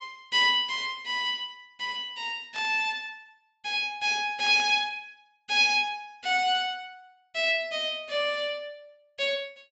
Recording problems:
treble cut off; nothing above 7.8 kHz
static burst; at 2.5 s and at 4.5 s; peak -13 dB vs average level

